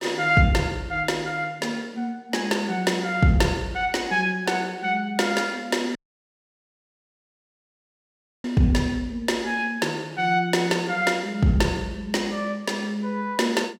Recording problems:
dropout; at 6 s for 2.5 s

